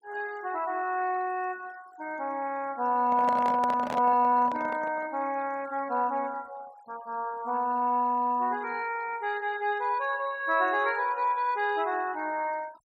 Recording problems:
noise reduction artefacts; signal-to-artefact ratio 23 dB
microphone handling noise; from 3 to 5 s; peak -1 dB vs average level

